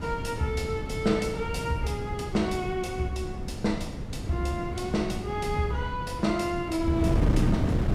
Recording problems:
wind noise; below 230 Hz, SNR 3 dB

